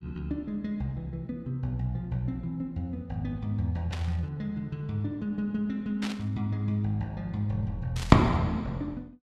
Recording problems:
static burst; at 4 s, at 6 s and at 8 s; peak -3 dB vs average level

